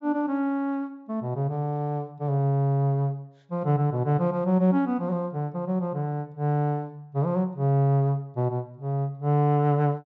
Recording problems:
treble cut off; nothing above 8 kHz

